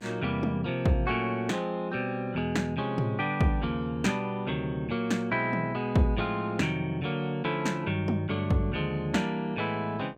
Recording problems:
mains hum; 60 Hz, harmonics up to 2.4 kHz, SNR 28 dB

